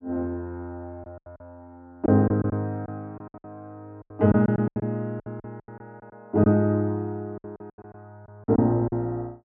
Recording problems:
lost packets; 13% of the sound replaced, filled with silence

